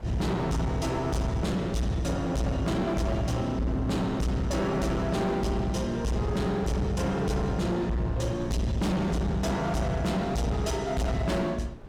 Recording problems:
distortion; hard clipping, uneven, signal-to-distortion ratio 7 dB
wind noise; below 430 Hz, SNR 17 dB

